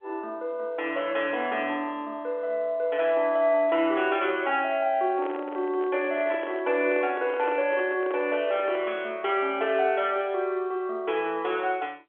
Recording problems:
phone line; 340 Hz to 3.3 kHz, G.711
microphone handling noise; from 5 to 9 s; peak -5 dB vs average level

